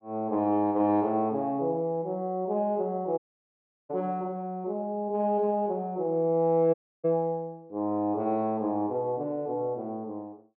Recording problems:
audio cutting out; at 3 s for 0.5 s and at 6.5 s

